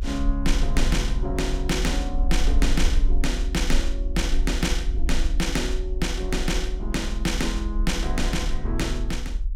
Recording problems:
low-frequency rumble; below 42 Hz, strongest tone 22 Hz, SNR 1 dB

